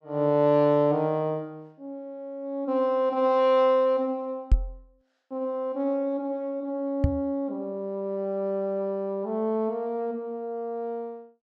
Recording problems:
microphone bump; at 4.5 s and at 7 s; peak +8 dB vs average level

